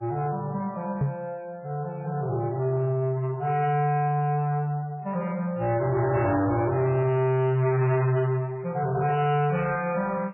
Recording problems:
lossy codec; MP3, log-spectral distance 2 dB, nothing above 2.7 kHz
distortion; soft clipping, signal-to-distortion ratio 8 dB
microphone thump; at 1 s; peak +3 dB vs average level

